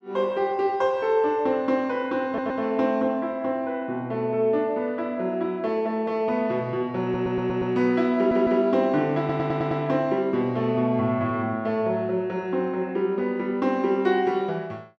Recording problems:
audio stuttering; 4 times, first at 2.5 s

